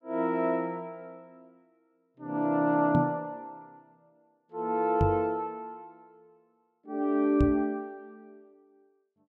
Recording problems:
knock on the microphone; at 3 s, at 5 s and at 7.5 s; peak +5 dB vs average level

